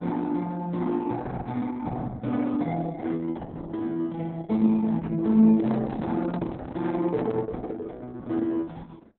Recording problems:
codec artefacts; Opus, log-spectral distance 3 dB, nothing above 4 kHz
microphone handling noise; from 5.5 to 7.5 s; peak -6 dB vs average level

